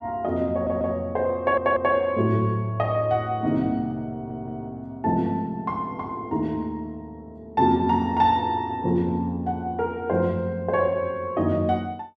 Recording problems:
audio stuttering; at 0.5 s, at 1.5 s and at 4 s

